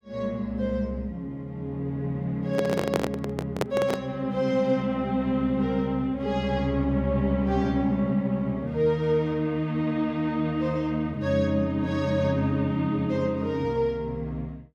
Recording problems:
microphone handling noise; from 2.5 to 4 s; peak +4 dB vs average level

